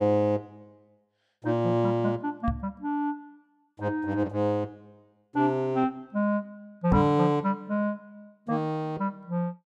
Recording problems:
knock on the microphone; at 2.5 s and at 7 s; peak +4 dB vs average level

